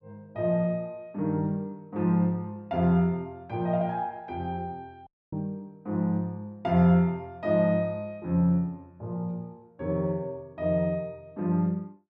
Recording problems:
audio cutting out; at 5 s

